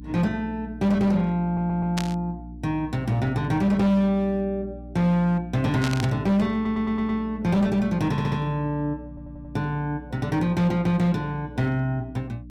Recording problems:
distortion; hard clipping, signal-to-distortion ratio 11 dB
hum; 60 Hz, harmonics up to 300 Hz, SNR 16 dB
stutter; 4 times, first at 1.5 s
burst of static; at 2 s and at 6 s; peak -2 dB vs average level

